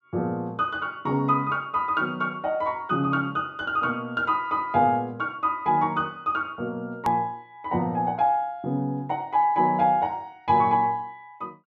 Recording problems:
click at an edit; at 7 s

